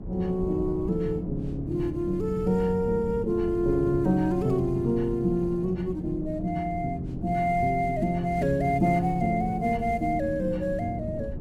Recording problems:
wind noise; below 210 Hz, SNR 10 dB

